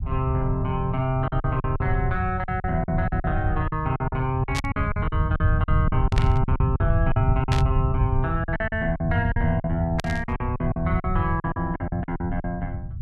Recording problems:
low-frequency rumble; below 110 Hz, SNR 1 dB
lost packets; 14% of the sound replaced, filled with silence
burst of static; 4 times, first at 4.5 s; peak +1 dB vs average level

